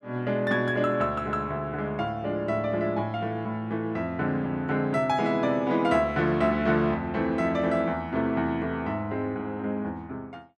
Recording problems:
none

